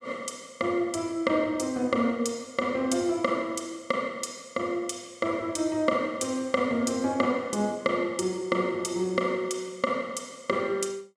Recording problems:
none

